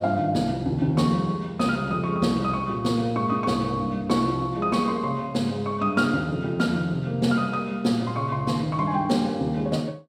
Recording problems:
none

